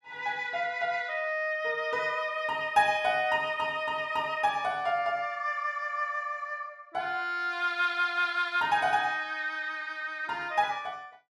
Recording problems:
none

